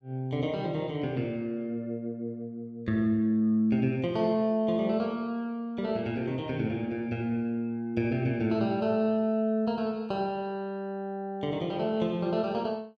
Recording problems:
none

